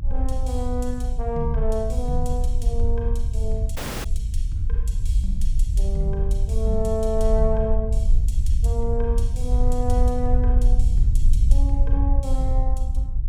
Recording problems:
rumble; below 58 Hz, SNR -5 dB
audio cutting out; at 4 s

